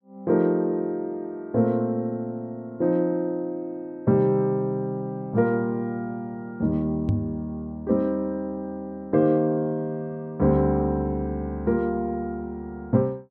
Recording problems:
knock on the microphone; at 7 s; peak +5 dB vs average level

